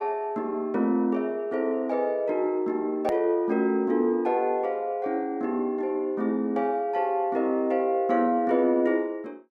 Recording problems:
hard cut with a click; at 3 s

